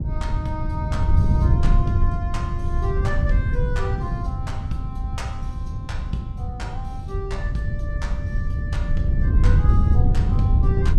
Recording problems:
wind on the microphone; below 100 Hz, SNR -10 dB

